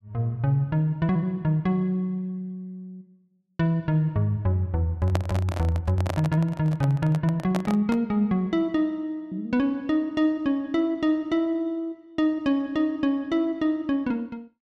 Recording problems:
microphone handling noise; from 5 to 8 s; peak +1 dB vs average level

